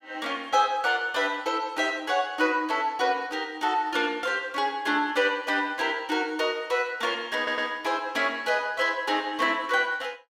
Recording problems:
stutter; at 7.5 s

